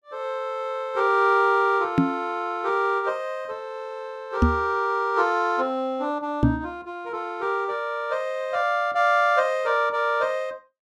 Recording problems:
microphone thump; at 2 s, at 4.5 s and at 6.5 s; peak +9 dB vs average level

